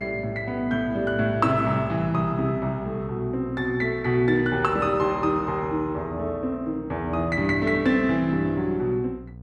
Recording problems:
hum; 60 Hz, harmonics up to 720 Hz, SNR 18 dB

